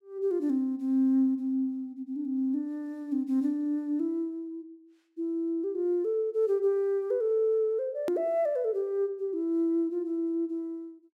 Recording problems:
edit click; at 8 s

